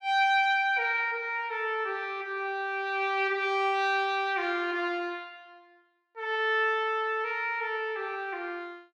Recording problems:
none

